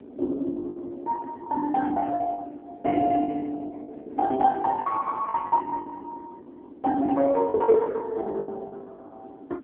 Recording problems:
phone line; 240 Hz to 2.2 kHz, AMR-NB
wind on the microphone; below 400 Hz, SNR 17 dB
lost packets; 16% of the sound replaced, filled with the last packet

